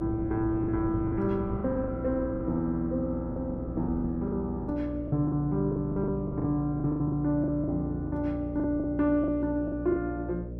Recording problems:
hum; 60 Hz, harmonics up to 600 Hz, SNR 9 dB
wind noise; below 270 Hz, SNR 15 dB
packet loss; 12% of the sound replaced, filled with the last packet

